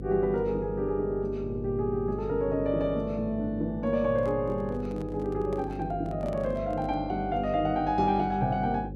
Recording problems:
electrical hum; 50 Hz, harmonics up to 550 Hz, SNR 10 dB
handling noise; from 4 to 7 s; peak -11 dB vs average level

